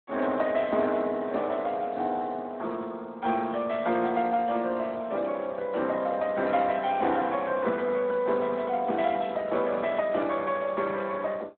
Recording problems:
telephone audio; 220 Hz to 4 kHz, Speex

